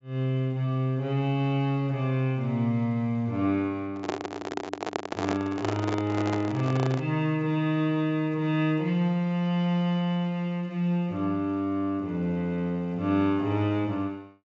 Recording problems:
treble missing; nothing above 8 kHz
microphone handling noise; from 4 to 7 s; peak +2 dB vs average level

